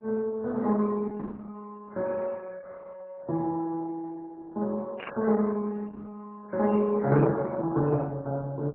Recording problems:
lossy compression; MP3, then Opus, log-spectral distance 3 dB
burst of static; at 5 s; peak -4 dB vs average level

